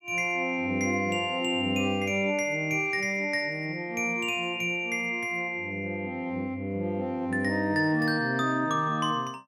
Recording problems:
none

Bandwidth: 16 kHz